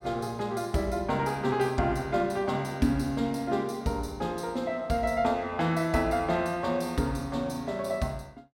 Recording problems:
none

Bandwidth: 16 kHz